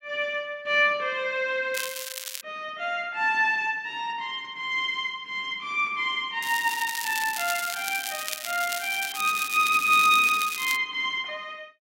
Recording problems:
crackle; at 1.5 s, from 6.5 to 9 s and from 9 to 11 s; loose cable, SNR 8 dB

